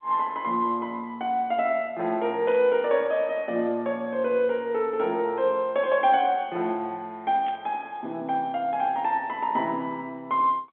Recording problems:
phone line; 190 Hz to 3.6 kHz, G.711
static burst; at 2.5 s and at 7.5 s; peak -14 dB vs average level

